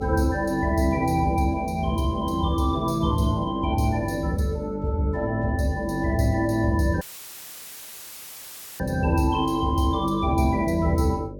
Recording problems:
hum; 50 Hz, harmonics up to 600 Hz, SNR 13 dB
audio cutting out; at 7 s for 2 s; filled with static

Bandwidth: 18 kHz